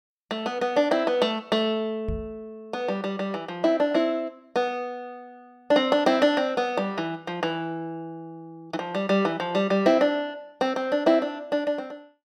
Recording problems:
microphone bump; at 2 s; peak -3 dB vs average level

